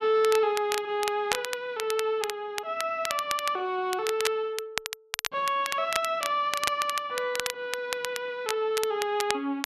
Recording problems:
crackle; vinyl, SNR 6 dB

